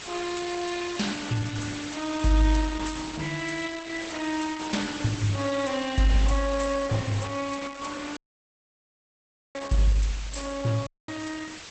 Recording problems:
lossy codec; Opus, log-spectral distance 9 dB, nothing above 8.2 kHz
background hiss; slope +1 dB per octave, SNR 10 dB
dropout; at 8 s for 1.5 s and at 11 s

